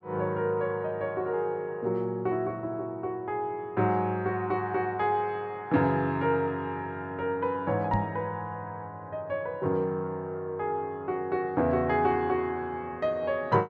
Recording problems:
knock on the microphone; at 8 s; peak +3 dB vs average level

